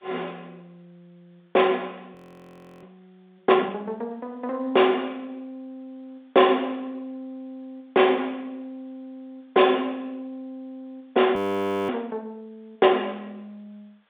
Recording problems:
phone line; 280 Hz to 3.6 kHz, G.711
background hiss; SNR 42 dB
audio freezing; at 2 s for 0.5 s and at 11 s for 0.5 s

